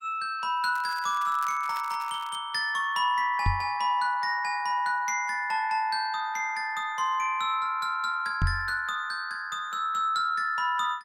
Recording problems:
lossy compression; Opus, log-spectral distance 2 dB, nothing above 16.5 kHz
crackle; from 1 to 2.5 s; loose cable, SNR 21 dB
microphone bump; at 3.5 s and at 8.5 s; peak +4 dB vs average level

